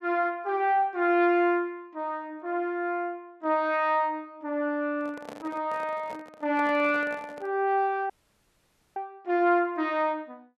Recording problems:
handling noise; from 5 to 7.5 s; peak -10 dB vs average level
audio cutting out; at 8 s for 1 s

